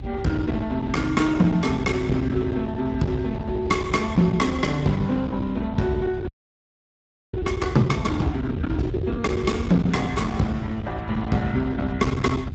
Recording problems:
codec artefacts; Speex, log-spectral distance 2 dB, nothing above 7.6 kHz
distortion; hard clipping, uneven, signal-to-distortion ratio 12 dB
rumble; below 310 Hz, SNR 8 dB
audio freezing; at 6.5 s for 1 s

